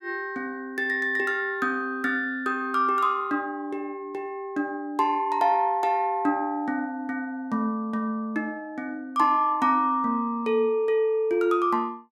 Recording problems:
none

